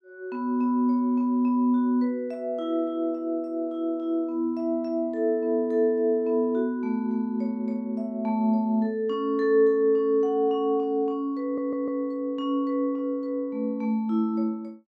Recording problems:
audio stuttering; at 11 s

